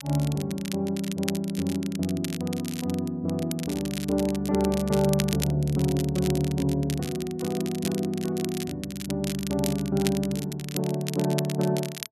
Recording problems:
crackle; vinyl, SNR 11 dB

